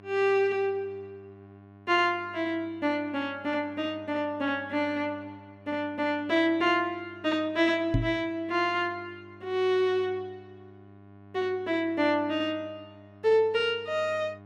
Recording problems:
hum; 50 Hz, harmonics up to 1.8 kHz, SNR 23 dB
microphone bump; at 8 s; peak +6 dB vs average level

